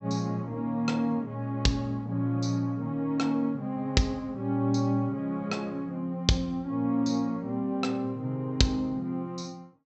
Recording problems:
treble cut off; nothing above 7.9 kHz

